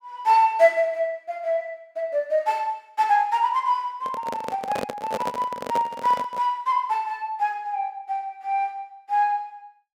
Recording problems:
handling noise; from 4 to 6.5 s; peak -1 dB vs average level

